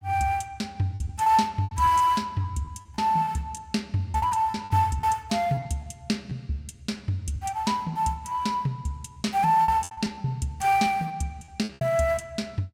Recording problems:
packet loss; 10% of the sound replaced, filled with repeated pitch periods

